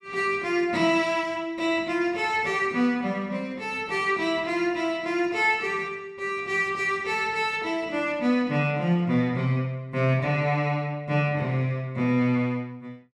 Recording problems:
none

